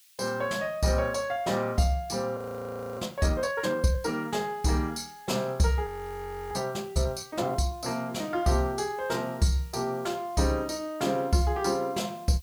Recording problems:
hiss; SNR 25 dB
audio freezing; at 2.5 s for 0.5 s and at 6 s for 0.5 s

